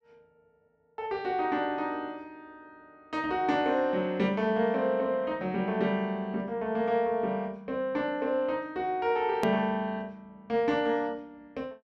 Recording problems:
edit click; at 9.5 s

